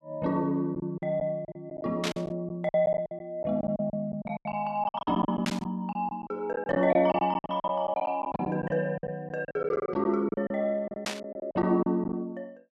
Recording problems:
lost packets; 15% of the sound replaced, filled with silence
burst of static; at 2 s, at 5.5 s and at 11 s; peak +2 dB vs average level

